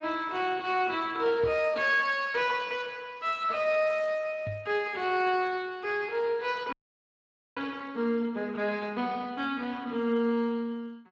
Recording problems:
lossy compression; Speex, log-spectral distance 3 dB
microphone thump; at 1.5 s and at 4.5 s; peak -7 dB vs average level
frozen audio; at 6.5 s for 1 s

